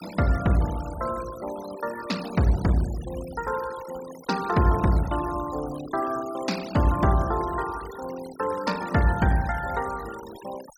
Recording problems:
noise reduction artefacts; signal-to-artefact ratio 16 dB

